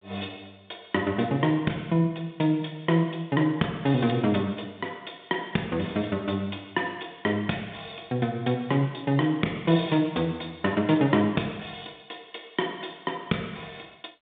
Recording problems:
telephone audio; 170 Hz to 3.7 kHz, G.726

